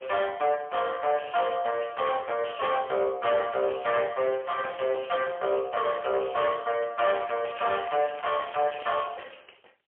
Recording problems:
phone line; 340 Hz to 3.2 kHz, AMR-NB, then MP3
distortion; hard clipping, uneven, signal-to-distortion ratio 12 dB
crackling; from 7.5 to 9 s; loose cable, SNR 18 dB

